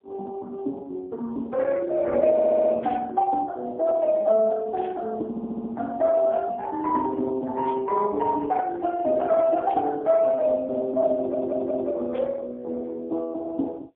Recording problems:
telephone audio; 220 Hz to 2.8 kHz, AMR-NB, then MP3
audio stuttering; at 2.5 s, at 5.5 s and at 11 s
static burst; 5 times, first at 3 s; peak -12 dB vs average level

